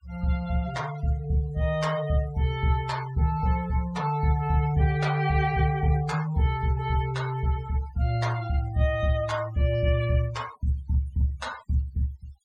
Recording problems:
noise reduction artefacts; signal-to-artefact ratio 20 dB

